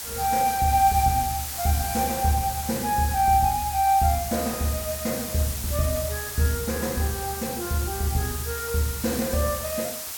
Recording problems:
hiss; slope +1 dB per octave, SNR 6 dB

